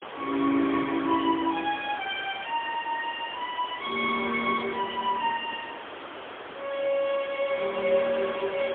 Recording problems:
telephone audio; 240 Hz to 3.7 kHz, AMR-NB, then MP3
hiss; SNR 11 dB

